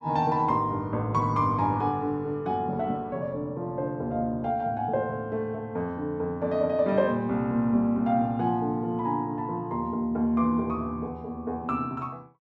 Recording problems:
none

